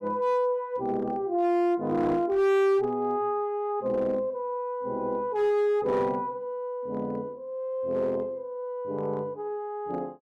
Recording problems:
distortion; hard clipping, uneven, signal-to-distortion ratio 10 dB

